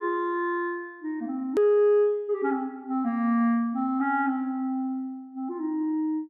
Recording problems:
edit click; at 1.5 s

